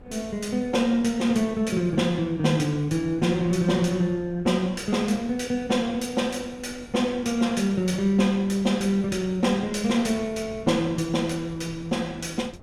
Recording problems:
wind on the microphone; below 320 Hz, SNR 21 dB

